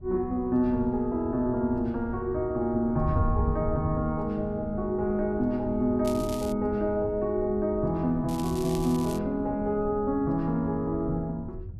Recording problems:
wind on the microphone; below 100 Hz, SNR 10 dB
crackle; at 6 s and at 8.5 s; loose cable, SNR 16 dB

